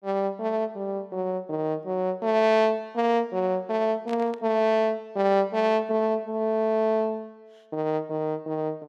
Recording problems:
static burst; at 4 s; peak -12 dB vs average level

